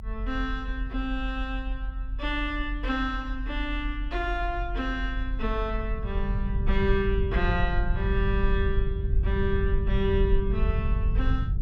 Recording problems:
rumble; below 68 Hz, SNR -1 dB

